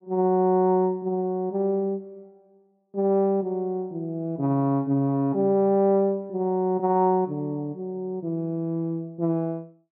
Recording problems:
none

